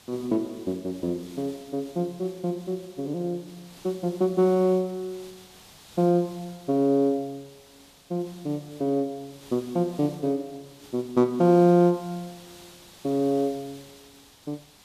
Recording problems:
background hiss; slope -1 dB per octave, SNR 23 dB

